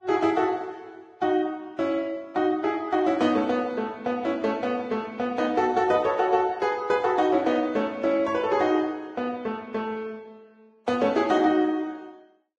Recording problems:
codec artefacts; Vorbis, log-spectral distance 2 dB

